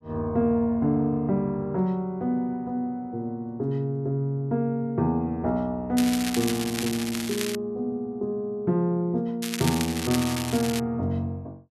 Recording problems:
crackling; from 6 to 7.5 s and from 9.5 to 11 s; loose cable, SNR 6 dB

